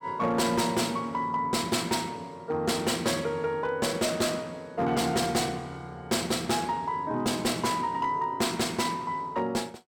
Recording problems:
distorted audio; hard clipping, signal-to-distortion ratio 11 dB

